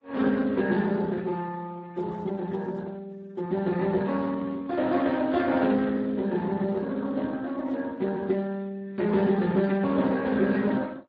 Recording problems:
lossy codec; MP3, then Speex, log-spectral distance 3 dB

